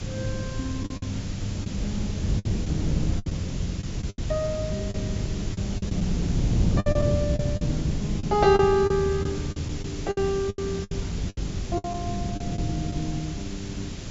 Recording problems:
treble missing; nothing above 7.5 kHz
hiss; SNR 12 dB
wind on the microphone; below 200 Hz, SNR 2 dB
packet loss; 9% of the sound replaced, filled with the last packet

